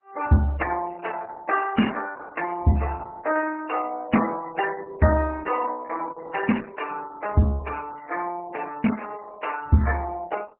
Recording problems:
lossy compression; MP3, then Opus, log-spectral distance 7 dB, nothing above 2.8 kHz

